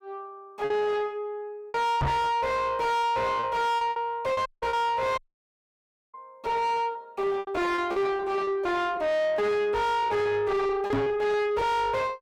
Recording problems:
distortion; soft clipping, signal-to-distortion ratio 5 dB
lost packets; 9% of the sound replaced, filled with repeated pitch periods
microphone thump; at 2 s and at 11 s; peak +6 dB vs average level
audio cutting out; at 4.5 s and at 5 s for 1 s

